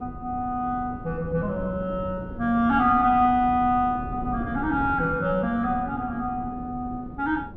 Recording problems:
wind on the microphone; below 270 Hz, SNR 12 dB

